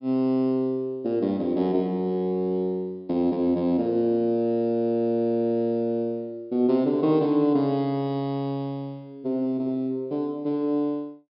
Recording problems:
treble missing; nothing above 5.5 kHz

